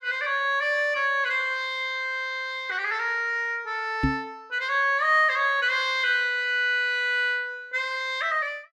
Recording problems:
knock on the microphone; at 4 s; peak +3 dB vs average level

